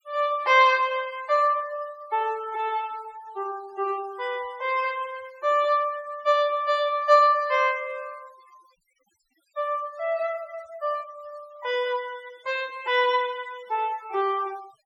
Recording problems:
denoising artefacts; signal-to-artefact ratio 24 dB

